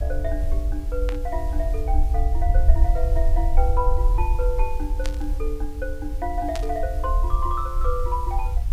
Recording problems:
hiss; slope -3 dB per octave, SNR 20 dB
rumble; below 58 Hz, strongest tone 22 Hz, SNR -5 dB
burst of static; at 1 s, at 5 s and at 6.5 s; peak 0 dB vs average level

